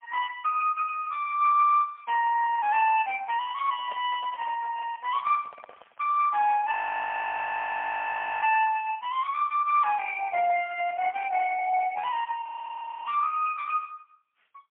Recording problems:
telephone audio; 470 Hz to 3.3 kHz, AMR-NB, then MP3
handling noise; from 3.5 to 6 s; peak -11 dB vs average level
frozen audio; at 6.5 s for 1.5 s and at 12 s for 0.5 s

